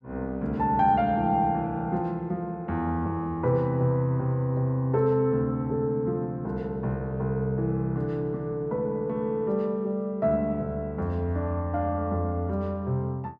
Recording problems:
none

